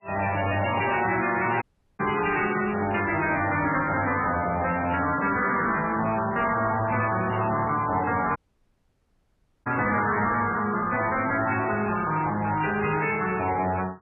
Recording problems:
codec artefacts; MP3, log-spectral distance 7 dB, nothing above 2.4 kHz
distorted audio; soft clipping, signal-to-distortion ratio 9 dB
audio cutting out; at 1.5 s and at 8.5 s for 1.5 s

